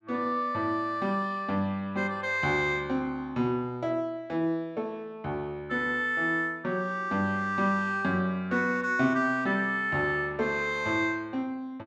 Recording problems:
none

